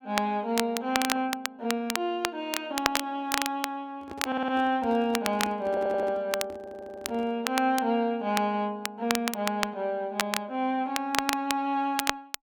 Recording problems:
crackle; vinyl, SNR 4 dB
handling noise; from 4 to 7.5 s; peak -7 dB vs average level
audio stuttering; at 4.5 s, at 5.5 s and at 6.5 s

